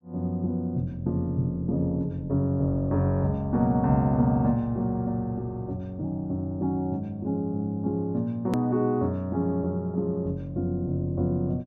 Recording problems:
hard cut with a click; at 8.5 s

